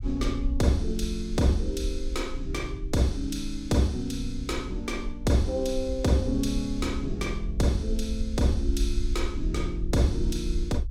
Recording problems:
low-frequency rumble; below 58 Hz, SNR 6 dB

